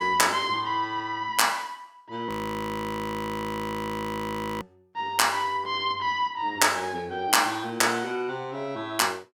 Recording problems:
audio freezing; at 2.5 s for 2.5 s

